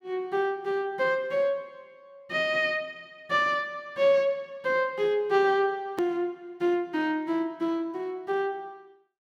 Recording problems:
hard cut with a click; at 6 s

